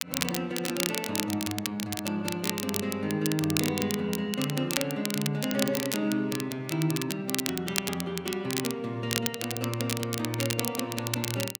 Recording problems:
crackle; vinyl, SNR 2 dB

